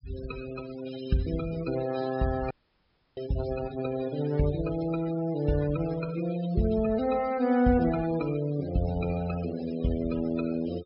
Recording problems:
treble missing; nothing above 5.3 kHz
denoising artefacts; signal-to-artefact ratio 15 dB
audio cutting out; at 2.5 s for 0.5 s

